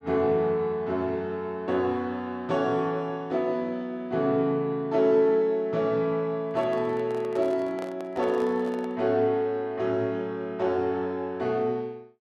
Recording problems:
handling noise; from 6.5 to 9 s; peak -8 dB vs average level

